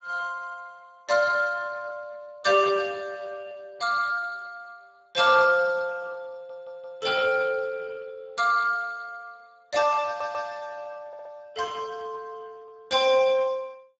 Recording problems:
lossy compression; Speex, log-spectral distance 4 dB, nothing above 7.6 kHz
audio stuttering; at 6.5 s, at 10 s and at 11 s

